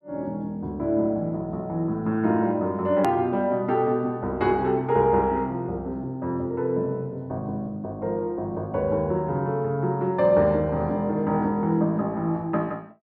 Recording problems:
hard cut with a click; at 3 s

